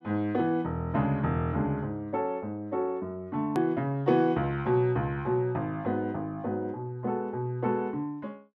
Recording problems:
edit click; at 3.5 s

